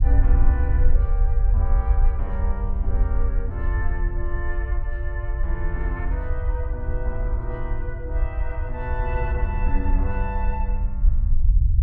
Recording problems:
low-frequency rumble; below 60 Hz, SNR -9 dB

